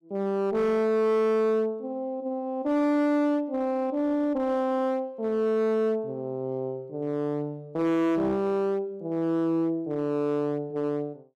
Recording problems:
distortion; hard clipping, signal-to-distortion ratio 10 dB

